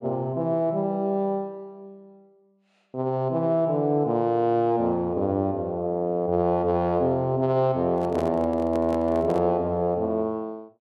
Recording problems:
handling noise; from 8 to 9.5 s; peak -6 dB vs average level

